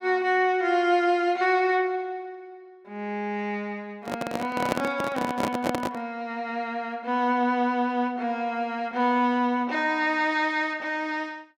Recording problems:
microphone handling noise; from 4 to 6 s; peak +3 dB vs average level

